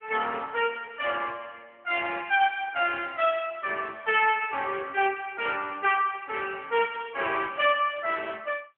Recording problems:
phone line; 260 Hz to 3.2 kHz, AMR-NB

